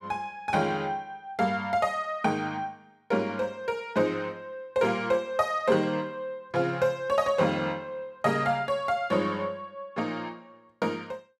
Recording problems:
none

